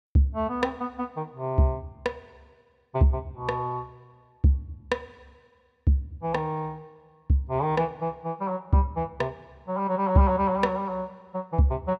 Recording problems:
none

